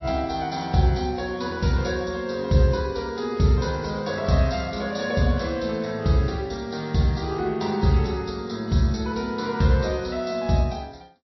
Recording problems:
lossy codec; MP3, log-spectral distance 5 dB, nothing above 5.7 kHz

